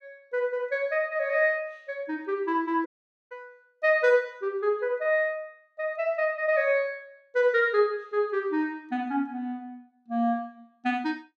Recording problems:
dropout; at 3 s

